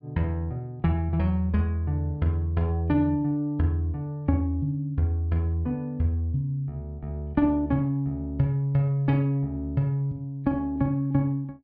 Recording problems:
treble cut off; nothing above 5.5 kHz

